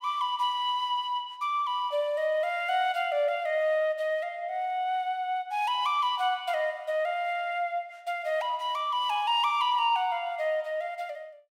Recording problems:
none

